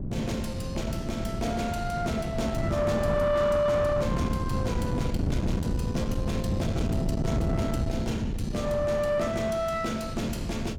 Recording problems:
distorted audio; soft clipping, signal-to-distortion ratio 11 dB
wind noise; below 250 Hz, SNR 2 dB

